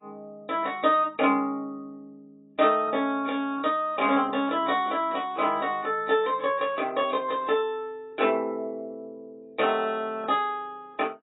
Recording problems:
codec artefacts; AAC, log-spectral distance 2 dB, nothing above 3.8 kHz

